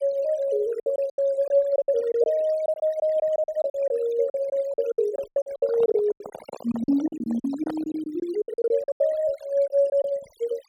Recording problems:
noise reduction artefacts; signal-to-artefact ratio 20 dB
packet loss; 16% of the sound replaced, filled with silence
handling noise; from 5 to 8 s; peak -6 dB vs average level

